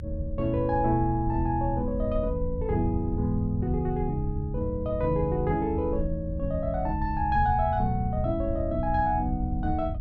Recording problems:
low-frequency rumble; below 82 Hz, SNR 6 dB

